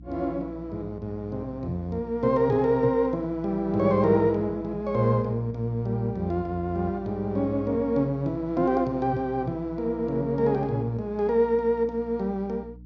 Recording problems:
treble missing; nothing above 8 kHz
electrical hum; 60 Hz, harmonics up to 300 Hz, SNR 19 dB

